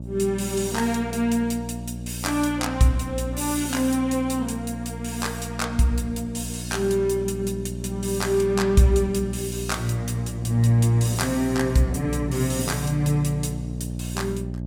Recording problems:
electrical hum; 60 Hz, harmonics up to 660 Hz, SNR 9 dB

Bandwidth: 16 kHz